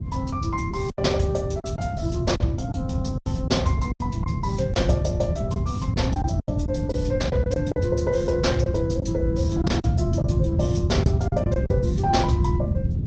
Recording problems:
treble missing; nothing above 8 kHz
lossy codec; Opus, log-spectral distance 2 dB
low-frequency rumble; below 170 Hz, SNR 0 dB
lost packets; 8% of the sound replaced, filled with silence

